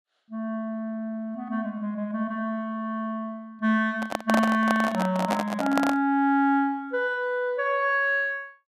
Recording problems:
handling noise; from 4 to 6 s; peak +4 dB vs average level

